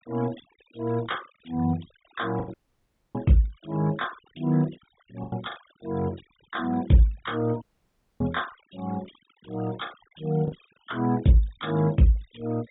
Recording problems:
treble cut off; nothing above 4 kHz
denoising artefacts; signal-to-artefact ratio 21 dB
lost packets; 3% of the sound replaced, filled with the last packet
dropout; at 2.5 s for 0.5 s and at 7.5 s for 0.5 s

